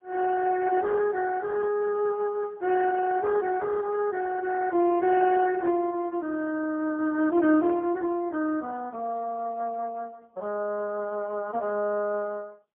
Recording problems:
phone line; 240 Hz to 2.6 kHz, AMR-NB, then MP3

